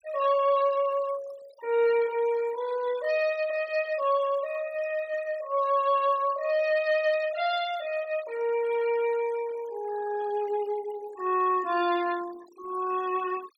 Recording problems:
denoising artefacts; signal-to-artefact ratio 18 dB

